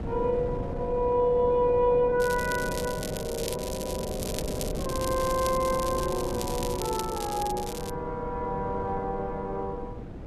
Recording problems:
wind on the microphone; below 290 Hz, SNR 9 dB
crackle; from 2 to 8 s; loose cable, SNR 10 dB

